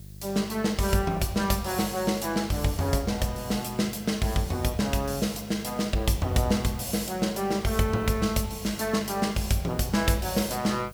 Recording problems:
electrical hum; 50 Hz, harmonics up to 550 Hz, SNR 19 dB
background hiss; slope +4 dB per octave, SNR 24 dB

